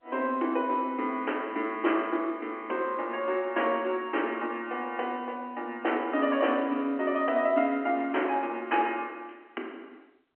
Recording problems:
phone line; 220 Hz to 3.2 kHz, G.711

